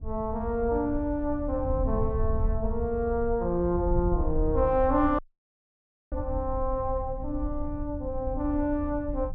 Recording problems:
wind noise; below 76 Hz, SNR 6 dB
dropout; at 5 s for 1 s

